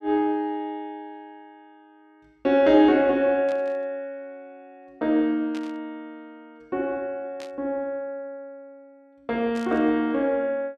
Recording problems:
burst of static; 4 times, first at 3.5 s; peak -14 dB vs average level

